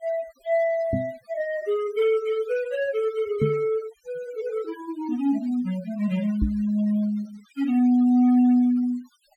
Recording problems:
denoising artefacts; signal-to-artefact ratio 21 dB
knock on the microphone; at 1 s, at 3.5 s and at 6.5 s; peak +3 dB vs average level

